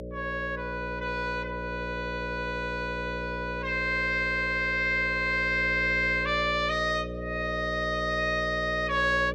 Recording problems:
hum; 60 Hz, harmonics up to 600 Hz, SNR 9 dB

